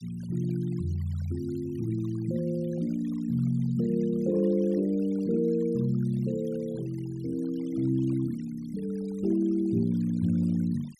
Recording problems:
denoising artefacts; signal-to-artefact ratio 26 dB

